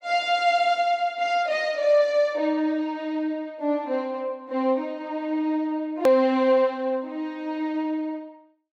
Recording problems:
hard cut with a click; at 6 s

